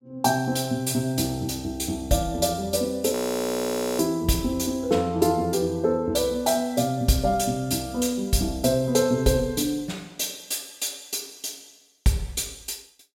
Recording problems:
audio freezing; at 3 s for 1 s

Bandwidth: 16 kHz